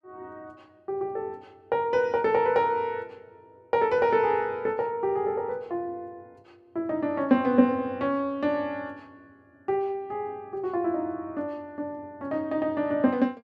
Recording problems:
none

